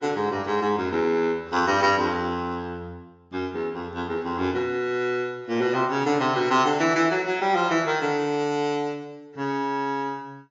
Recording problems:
codec artefacts; AAC, log-spectral distance 2 dB, nothing above 6.2 kHz

